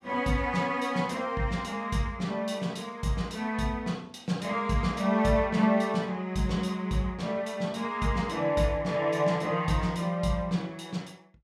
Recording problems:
none

